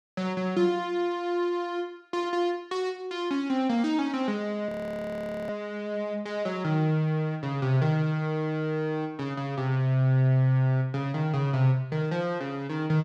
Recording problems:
audio freezing; at 4.5 s for 1 s

